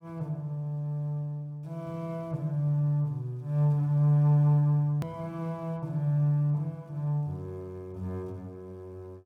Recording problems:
click at an edit; at 5 s

